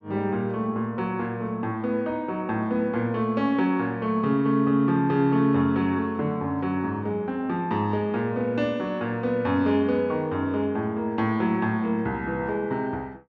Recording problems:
none

